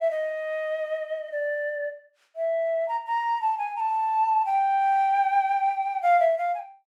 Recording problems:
none

